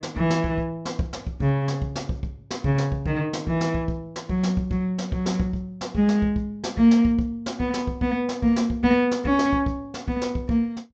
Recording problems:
treble cut off; nothing above 8 kHz

